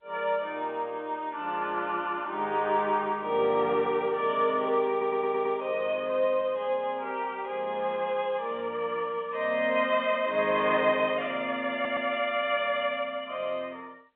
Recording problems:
telephone audio; 280 Hz to 3.6 kHz, G.711
stutter; at 5 s and at 12 s

